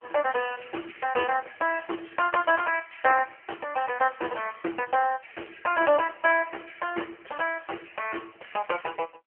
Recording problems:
telephone audio; 300 Hz to 3.1 kHz, AMR-NB

